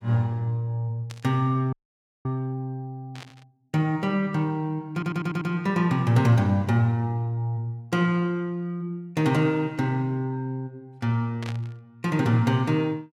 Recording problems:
burst of static; at 1 s, at 3 s and at 11 s; peak -9 dB vs average level
frozen audio; at 1.5 s for 0.5 s
audio stuttering; at 5 s

